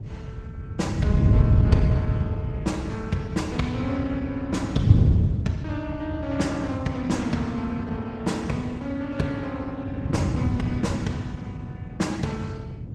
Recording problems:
codec artefacts; Opus, log-spectral distance 2 dB, nothing above 15.5 kHz
wind noise; below 150 Hz, SNR -3 dB

